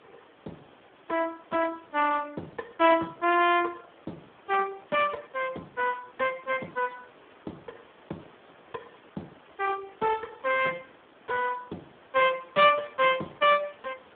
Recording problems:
phone line; 240 Hz to 3.4 kHz, Speex
hiss; SNR 27 dB

